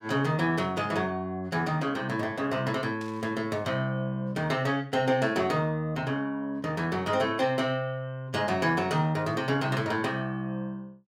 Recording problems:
burst of static; at 3 s; peak -14 dB vs average level

